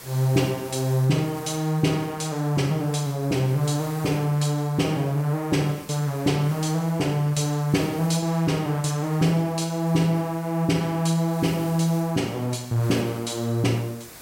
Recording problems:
background hiss; slope -2 dB per octave, SNR 20 dB

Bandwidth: 16 kHz